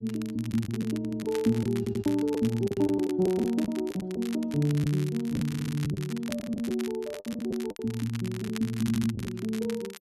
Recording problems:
crackle; vinyl, SNR 15 dB
lost packets; 9% of the sound replaced, filled with the last packet
audio stuttering; 4 times, first at 1 s

